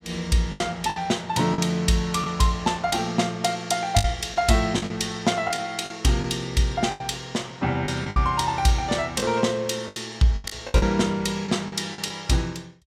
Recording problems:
lost packets; 9% of the sound replaced, filled with the last packet

